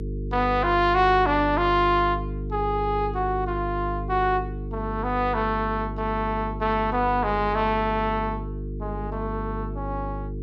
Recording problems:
mains hum; 50 Hz, harmonics up to 450 Hz, SNR 8 dB

